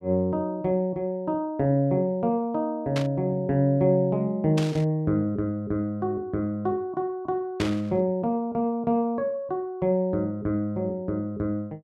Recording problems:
static burst; at 3 s, at 4.5 s and at 7.5 s; peak -2 dB vs average level

